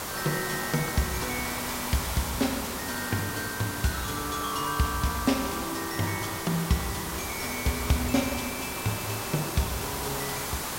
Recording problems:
hiss; SNR 3 dB

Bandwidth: 16 kHz